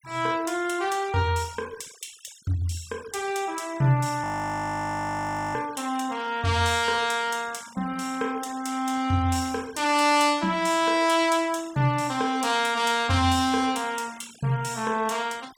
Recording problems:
noise reduction artefacts; signal-to-artefact ratio 21 dB
audio freezing; at 4 s for 1.5 s

